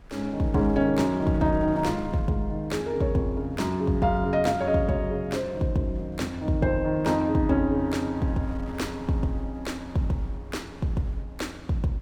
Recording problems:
wind on the microphone; below 230 Hz, SNR 21 dB

